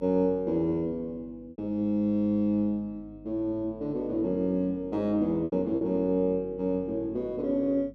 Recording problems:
mains hum; 50 Hz, harmonics up to 300 Hz, SNR 23 dB
packet loss; 3% of the sound replaced, filled with repeated pitch periods

